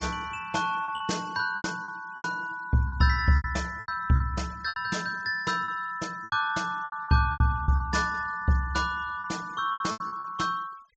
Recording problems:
low-pass filter; nothing above 8 kHz
denoising artefacts; signal-to-artefact ratio 23 dB
lost packets; 12% of the sound replaced, filled with repeated pitch periods

